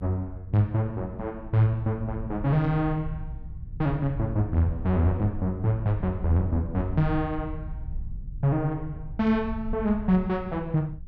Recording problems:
low-frequency rumble; below 86 Hz, SNR 12 dB

